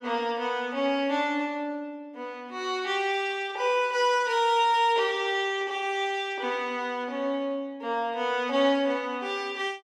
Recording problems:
none

